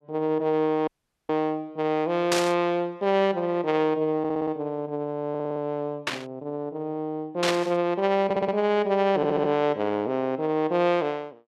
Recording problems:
audio cutting out; at 1 s
burst of static; at 2.5 s, at 6 s and at 7.5 s; peak +4 dB vs average level
audio stuttering; 4 times, first at 4 s

